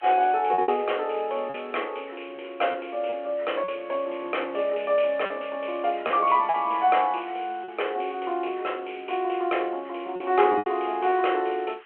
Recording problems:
telephone audio; 320 Hz to 3.2 kHz, G.726
hiss; SNR 26 dB
packet loss; 5% of the sound replaced, filled with repeated pitch periods

